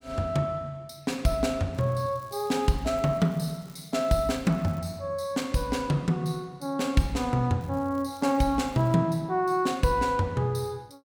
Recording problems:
crackle; from 2 to 5 s and from 7.5 to 9 s; loose cable, SNR 28 dB

